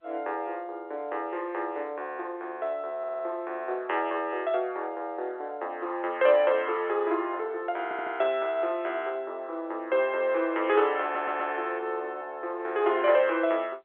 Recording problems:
phone line; 300 Hz to 3.6 kHz, G.711
stutter; at 3 s, at 8 s and at 11 s

